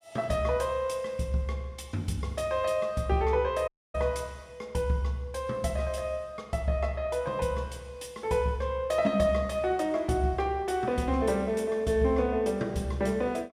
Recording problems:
audio cutting out; at 3.5 s

